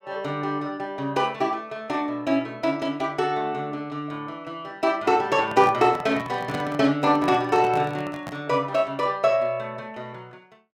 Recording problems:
handling noise; from 5.5 to 8.5 s; peak -6 dB vs average level

